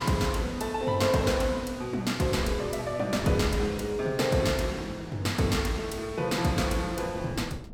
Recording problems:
wind on the microphone; below 300 Hz, SNR 18 dB

